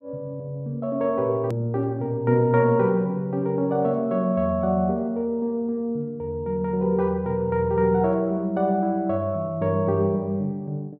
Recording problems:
hard cut with a click; at 1.5 s

